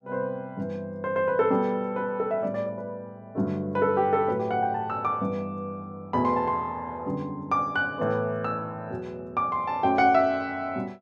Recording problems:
none

